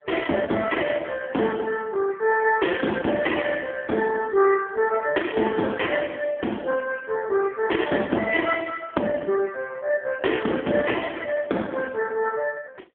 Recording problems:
telephone audio; 190 Hz to 3.3 kHz, AMR-NB

